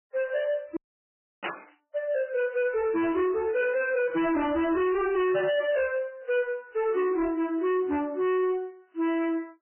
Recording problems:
codec artefacts; MP3, log-spectral distance 3 dB, nothing above 2.7 kHz
distorted audio; hard clipping, signal-to-distortion ratio 7 dB
audio cutting out; at 1 s for 0.5 s
burst of static; at 1.5 s; peak +1 dB vs average level

